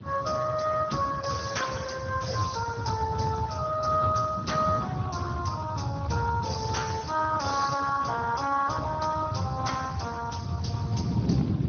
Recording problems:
treble cut off; nothing above 6.3 kHz
lossy compression; Speex, then Speex, log-spectral distance 4 dB
rumble; below 160 Hz, SNR 6 dB
wind on the microphone; below 240 Hz, SNR 9 dB

